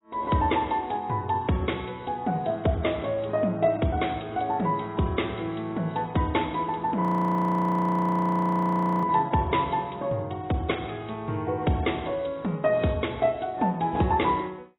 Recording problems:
lossy compression; AAC, log-spectral distance 5 dB
audio freezing; at 7 s for 2 s

